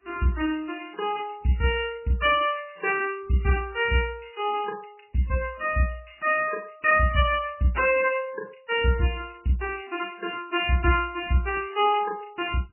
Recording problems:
codec artefacts; MP3, then MP3, log-spectral distance 7 dB, nothing above 2.9 kHz

